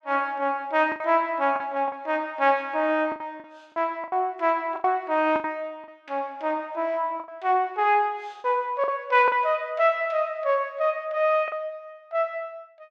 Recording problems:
lost packets; 7% of the sound replaced, filled with the last packet

